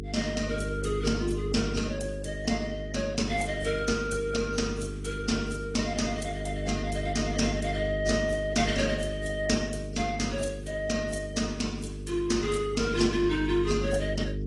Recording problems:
lossy compression; AAC, then AAC, log-spectral distance 4 dB, nothing above 10.7 kHz
hum; 50 Hz, harmonics up to 450 Hz, SNR 6 dB

